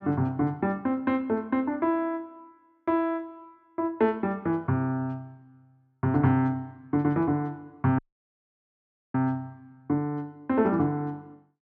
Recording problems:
dropout; at 8 s for 1 s

